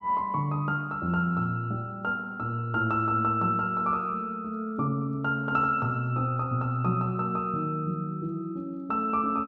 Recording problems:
none

